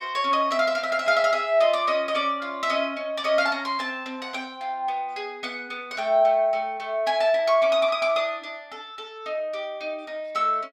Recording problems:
none

